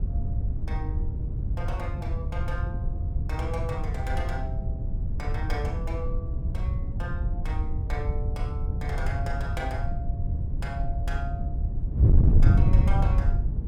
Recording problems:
wind on the microphone; below 110 Hz, SNR -10 dB

